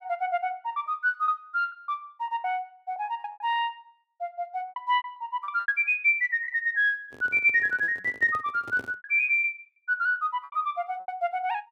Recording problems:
packet loss; 13% of the sound replaced, filled with repeated pitch periods
handling noise; from 7 to 9 s; peak -11 dB vs average level

